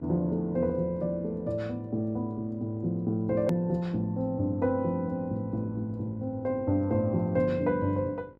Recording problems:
hum; 50 Hz, harmonics up to 1.5 kHz, SNR 27 dB
hard cut with a click; at 3.5 s

